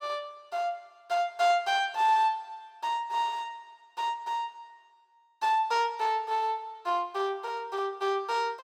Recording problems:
none

